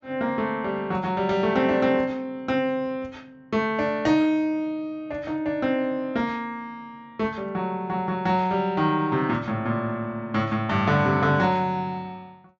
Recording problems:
low-pass filter; nothing above 8 kHz

